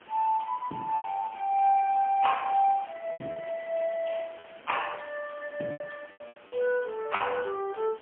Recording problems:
telephone audio; 240 Hz to 3.2 kHz, AMR-NB, then MP3
hiss; SNR 22 dB
lost packets; 7% of the sound replaced, filled with repeated pitch periods

